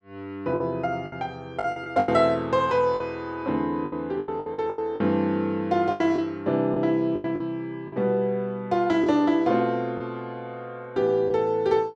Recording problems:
lost packets; 9% of the sound replaced, filled with the last packet

